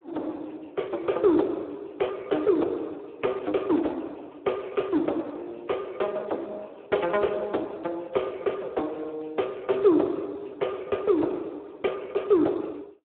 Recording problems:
phone line; 260 Hz to 3.4 kHz, Speex

